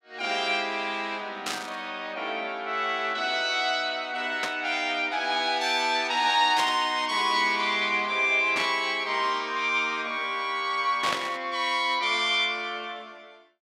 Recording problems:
static burst; 5 times, first at 1.5 s; peak +1 dB vs average level

